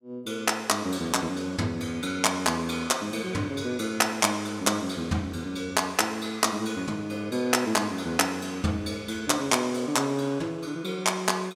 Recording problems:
none

